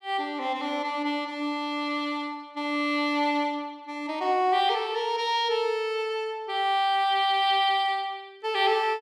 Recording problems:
none

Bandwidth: 16 kHz